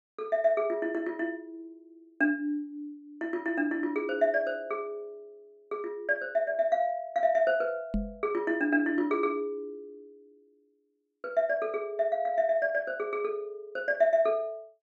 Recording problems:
knock on the microphone; at 8 s; peak +2 dB vs average level

